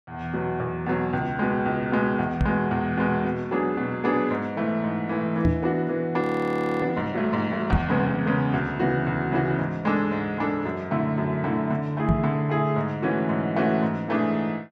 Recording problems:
microphone bump; 4 times, first at 2.5 s; peak +7 dB vs average level
frozen audio; at 6 s for 0.5 s

